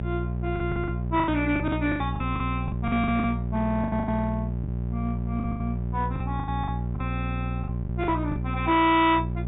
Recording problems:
treble cut off; nothing above 4 kHz
distorted audio; hard clipping, signal-to-distortion ratio 11 dB
electrical hum; 60 Hz, harmonics up to 600 Hz, SNR 3 dB
packet loss; 15% of the sound replaced, filled with the last packet

